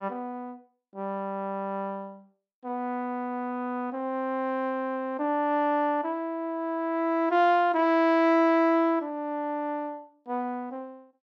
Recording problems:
none

